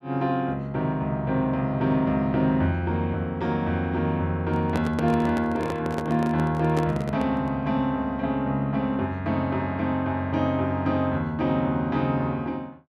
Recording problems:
handling noise; from 4.5 to 7.5 s; peak 0 dB vs average level

